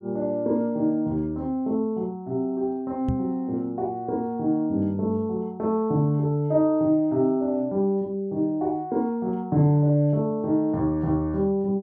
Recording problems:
microphone thump; at 3 s; peak +1 dB vs average level

